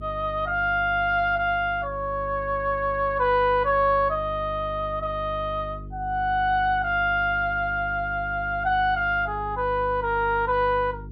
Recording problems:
electrical hum; 50 Hz, harmonics up to 450 Hz, SNR 15 dB

